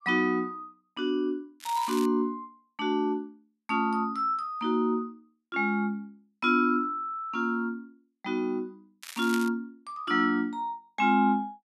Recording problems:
crackle; at 1.5 s and at 9 s; loose cable, SNR 14 dB

